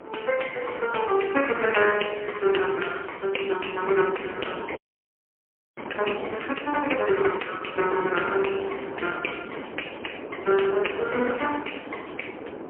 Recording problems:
telephone audio; 260 Hz to 2.8 kHz, AMR-NB, then MP3
wind on the microphone; below 710 Hz, SNR 11 dB
frozen audio; at 5 s for 1 s

